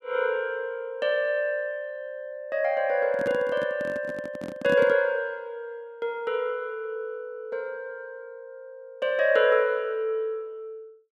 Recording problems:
handling noise; from 3 to 5 s; peak -1 dB vs average level

